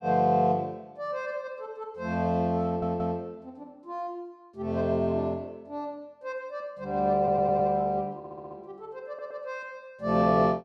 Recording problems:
audio stuttering; 4 times, first at 2.5 s

